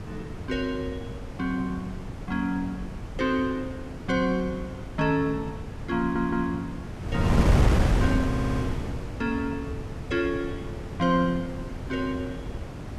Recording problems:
wind on the microphone; below 250 Hz, SNR 2 dB
audio stuttering; at 6 s and at 8.5 s

